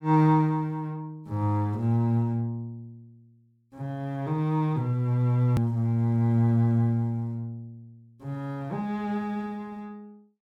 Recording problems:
hard cut with a click; at 5.5 s

